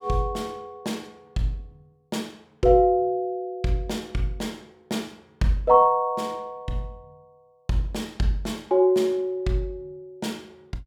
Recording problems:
none

